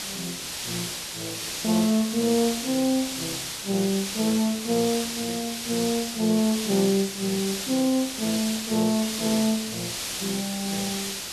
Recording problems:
background hiss; slope +1 dB per octave, SNR 4 dB

